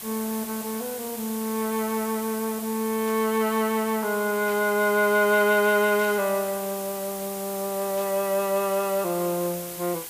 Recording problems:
hiss; slope -1 dB per octave, SNR 10 dB
burst of static; 4 times, first at 3 s; peak -14 dB vs average level

